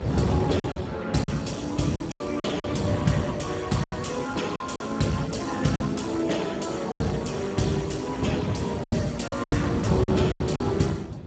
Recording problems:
lossy compression; Speex, log-spectral distance 5 dB, nothing above 7.8 kHz
electrical hum; 50 Hz, harmonics up to 450 Hz, SNR 17 dB
wind on the microphone; below 290 Hz, SNR 2 dB
lost packets; 9% of the sound replaced, filled with silence

